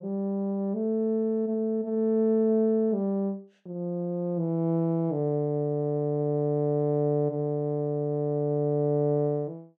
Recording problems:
none

